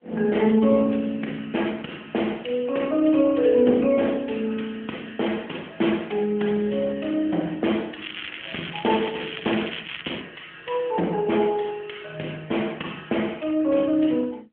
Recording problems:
phone line; 170 Hz to 3.3 kHz, AMR-NB
crackling; from 8 to 10 s; loose cable, SNR 10 dB

